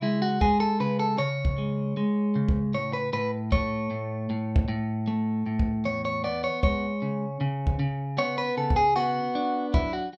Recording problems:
none

